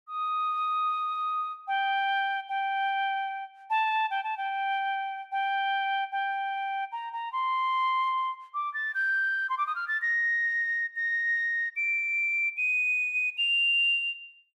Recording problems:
none

